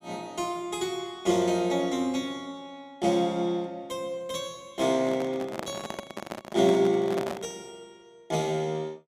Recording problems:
handling noise; from 5 to 7.5 s; peak -2 dB vs average level

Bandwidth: 15 kHz